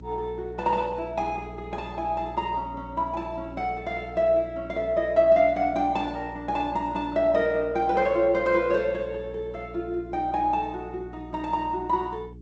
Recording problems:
codec artefacts; Opus, then G.722, log-spectral distance 2 dB
hum; 60 Hz, harmonics up to 420 Hz, SNR 18 dB

